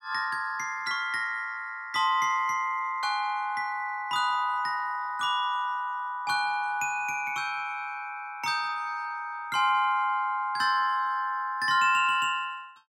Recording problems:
none

